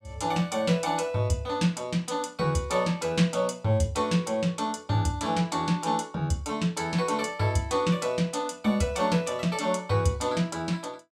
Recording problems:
none

